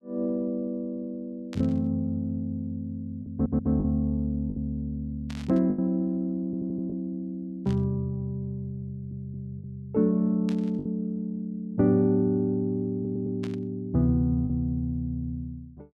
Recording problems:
packet loss; 3% of the sound replaced, filled with the last packet
burst of static; 5 times, first at 1.5 s; peak -11 dB vs average level
stutter; 4 times, first at 3.5 s

